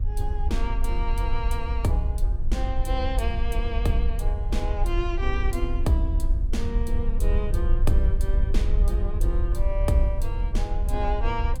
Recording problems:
wind on the microphone; below 56 Hz, SNR -3 dB

